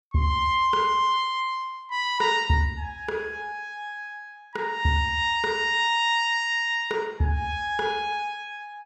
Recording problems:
none

